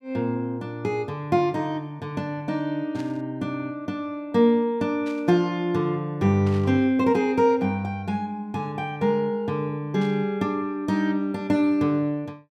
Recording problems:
static burst; 4 times, first at 3 s; peak -14 dB vs average level

